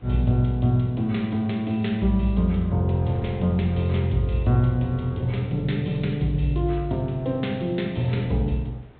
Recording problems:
treble cut off; nothing above 4 kHz
codec artefacts; MP2, log-spectral distance 3 dB
wind noise; below 570 Hz, SNR 27 dB

